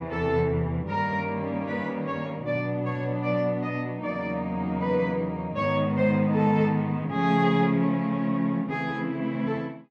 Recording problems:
none

